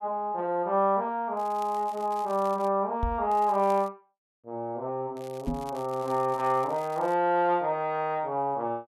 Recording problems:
crackling; from 1.5 to 2.5 s, at 3.5 s and from 5 to 7 s; loose cable, SNR 25 dB
microphone thump; at 3 s and at 5.5 s; peak +1 dB vs average level

